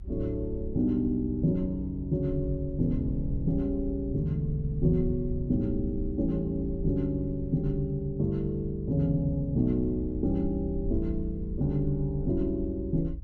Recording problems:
rumble; below 76 Hz, SNR 9 dB

